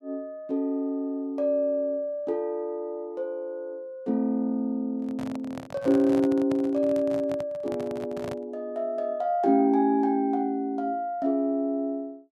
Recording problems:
handling noise; from 5 to 8.5 s; peak -5 dB vs average level

